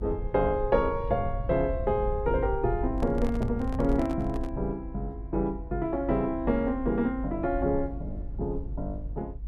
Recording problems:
rumble; below 70 Hz, SNR 7 dB
handling noise; from 3 to 4.5 s; peak -8 dB vs average level

